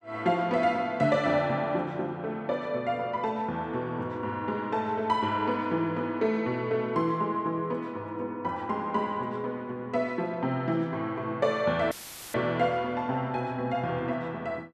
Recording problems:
audio cutting out; at 12 s; filled with static

